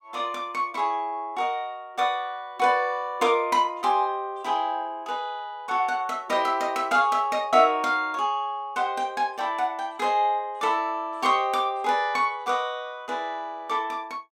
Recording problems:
none

